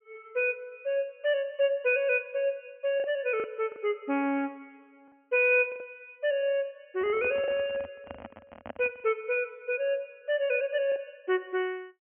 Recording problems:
treble missing; nothing above 3.2 kHz
packet loss; 4% of the sound replaced, filled with the last packet
microphone handling noise; from 7 to 9 s; peak -6 dB vs average level

